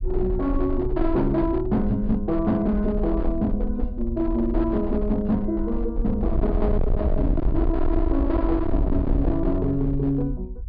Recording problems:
low-pass filter; nothing above 5 kHz
distorted audio; hard clipping, signal-to-distortion ratio 7 dB
rumble; below 66 Hz, SNR 4 dB

